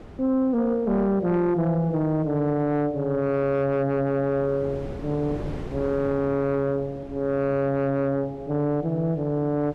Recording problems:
distortion; soft clipping, signal-to-distortion ratio 12 dB
wind noise; below 430 Hz, SNR 17 dB

